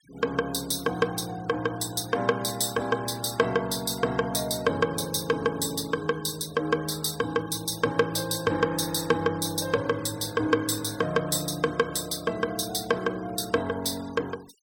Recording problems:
noise reduction artefacts; signal-to-artefact ratio 22 dB

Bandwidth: 17.5 kHz